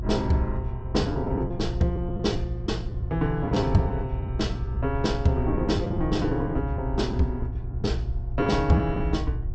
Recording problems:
low-pass filter; nothing above 8 kHz
electrical hum; 60 Hz, harmonics up to 720 Hz, SNR 10 dB
low-frequency rumble; below 76 Hz, SNR 5 dB
packet loss; 7% of the sound replaced, filled with the last packet

